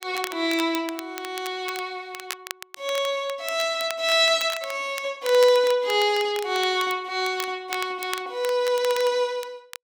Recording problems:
crackle; vinyl, SNR 14 dB

